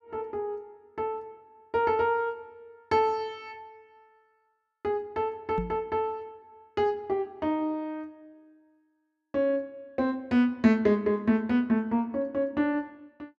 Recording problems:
knock on the microphone; at 5.5 s; peak -1 dB vs average level

